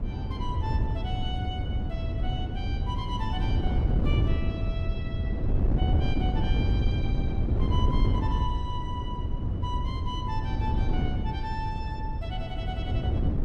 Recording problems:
wind noise; below 130 Hz, SNR -9 dB

